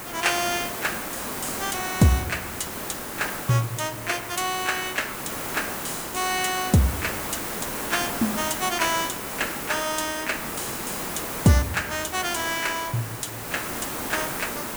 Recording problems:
hiss; slope -4 dB per octave, SNR 4 dB

